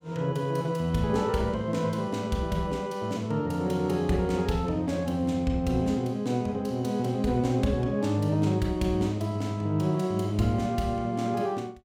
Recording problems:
none

